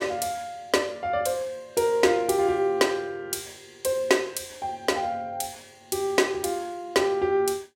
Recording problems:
none

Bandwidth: 16 kHz